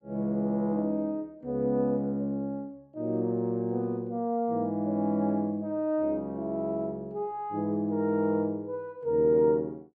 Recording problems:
none

